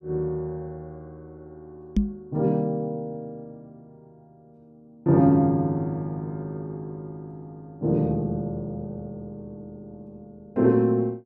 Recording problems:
microphone thump; at 2 s; peak +7 dB vs average level

